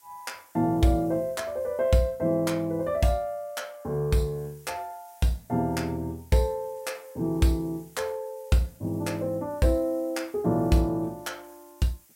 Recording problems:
background hiss; slope +1 dB per octave, SNR 27 dB

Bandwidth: 16 kHz